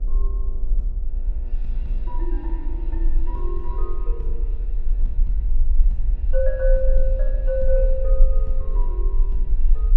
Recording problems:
hum; 60 Hz, harmonics up to 840 Hz, SNR 18 dB
low-frequency rumble; below 38 Hz, strongest tone 20 Hz, SNR -6 dB

